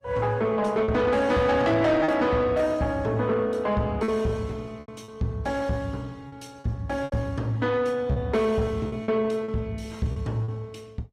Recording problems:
codec artefacts; Opus, log-spectral distance 2 dB, nothing above 16.6 kHz
distorted audio; soft clipping, signal-to-distortion ratio 11 dB
lost packets; 6% of the sound replaced, filled with repeated pitch periods

